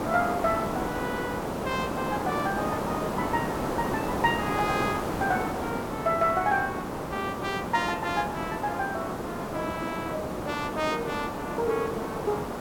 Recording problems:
background hiss; SNR 1 dB

